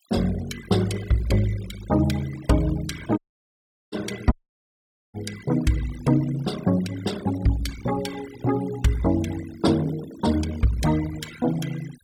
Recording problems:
denoising artefacts; signal-to-artefact ratio 15 dB
audio cutting out; at 3 s for 0.5 s and at 4.5 s for 1 s

